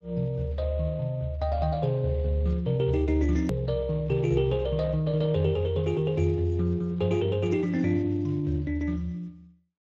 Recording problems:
lossy codec; Speex, log-spectral distance 2 dB, nothing above 13.1 kHz
click at an edit; at 3.5 s

